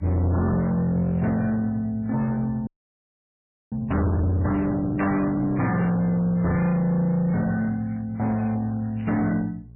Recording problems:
lossy compression; MP3, then MP3, log-spectral distance 2 dB, nothing above 11.3 kHz
distorted audio; hard clipping, uneven, signal-to-distortion ratio 7 dB
hum; 60 Hz, harmonics up to 420 Hz, SNR 22 dB
audio freezing; at 2.5 s for 1 s
crackle; from 6 to 8 s and at 8.5 s; loose cable, SNR 28 dB
microphone bump; at 6.5 s; peak +4 dB vs average level

